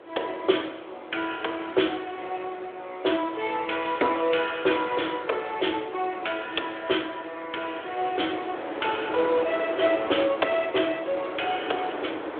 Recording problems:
phone line; 280 Hz to 3.5 kHz, Speex
wind noise; below 1 kHz, SNR 11 dB

